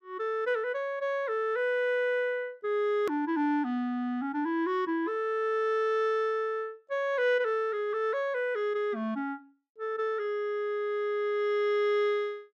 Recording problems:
edit click; at 3 s

